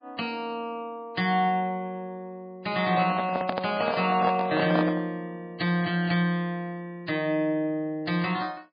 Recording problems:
lossy compression; MP3, log-spectral distance 2 dB, nothing above 4.5 kHz
handling noise; from 3 to 5 s; peak +2 dB vs average level

